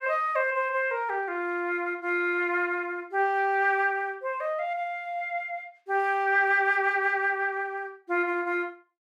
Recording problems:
none

